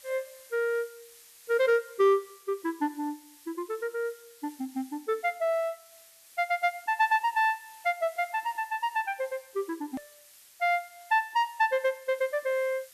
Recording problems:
hiss; slope +3 dB per octave, SNR 23 dB
edit click; at 10 s

